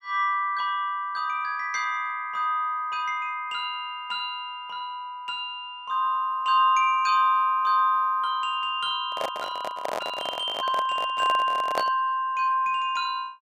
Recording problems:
handling noise; from 9 to 12 s; peak +2 dB vs average level

